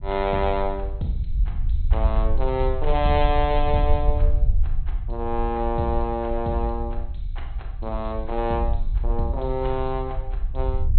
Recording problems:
low-pass filter; nothing above 4.2 kHz
low-frequency rumble; below 60 Hz, SNR 2 dB

